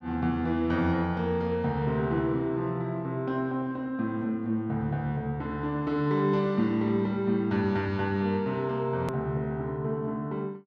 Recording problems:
hard cut with a click; at 9 s

